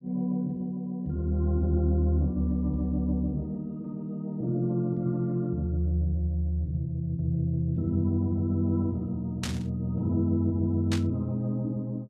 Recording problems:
static burst; at 9.5 s and at 11 s; peak -2 dB vs average level

